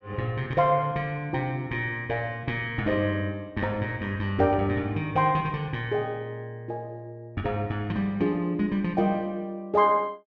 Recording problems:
none

